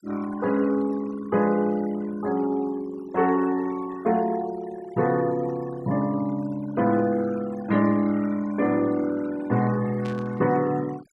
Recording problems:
noise reduction artefacts; signal-to-artefact ratio 19 dB
static burst; at 10 s; peak -13 dB vs average level

